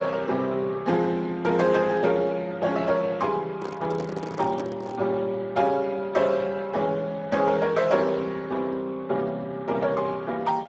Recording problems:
codec artefacts; Speex, log-spectral distance 3 dB, nothing above 7.3 kHz
handling noise; from 3.5 to 5 s; peak -3 dB vs average level

